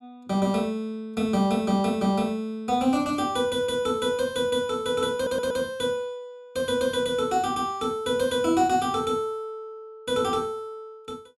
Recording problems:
stutter; at 5 s

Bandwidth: 15 kHz